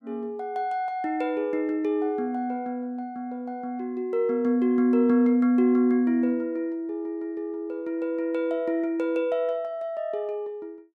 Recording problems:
none

